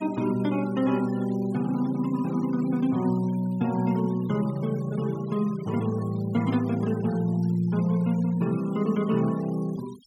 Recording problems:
denoising artefacts; signal-to-artefact ratio 22 dB

